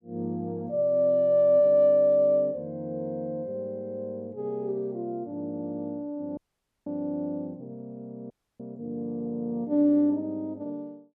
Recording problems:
dropout; at 6.5 s and at 8.5 s

